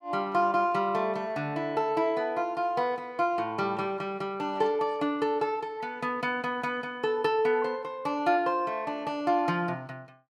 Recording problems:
none

